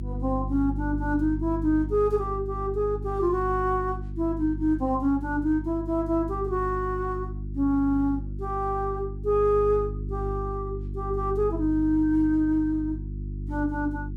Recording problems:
mains hum; 50 Hz, harmonics up to 350 Hz, SNR 8 dB

